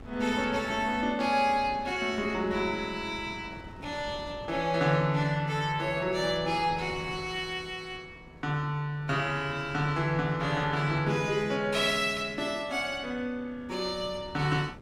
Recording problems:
wind noise; below 450 Hz, SNR 19 dB

